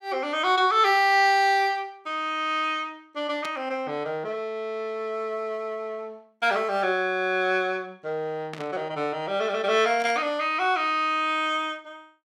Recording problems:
static burst; at 3.5 s, at 8.5 s and at 10 s; peak -8 dB vs average level

